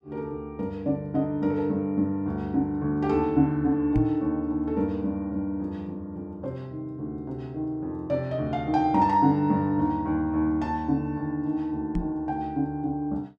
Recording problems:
knock on the microphone; at 4 s and at 12 s; peak +3 dB vs average level

